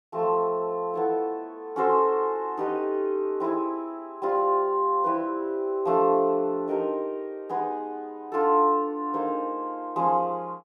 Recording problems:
none

